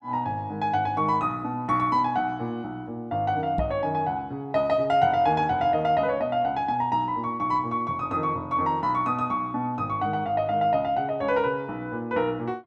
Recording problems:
microphone bump; at 3.5 s; peak 0 dB vs average level

